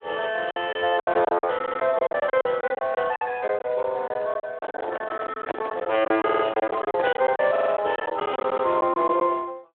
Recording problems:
telephone audio; 280 Hz to 3.5 kHz, Speex
packet loss; 15% of the sound replaced, filled with silence
stutter; 4 times, first at 1.5 s
microphone handling noise; from 4.5 to 7.5 s; peak 0 dB vs average level

